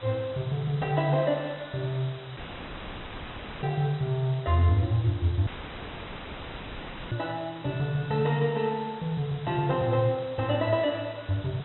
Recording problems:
low-pass filter; nothing above 3.9 kHz
hiss; SNR 18 dB
audio cutting out; at 2.5 s for 1.5 s and at 5.5 s for 1.5 s

